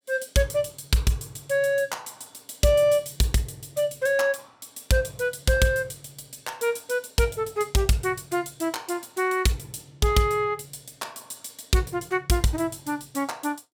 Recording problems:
none

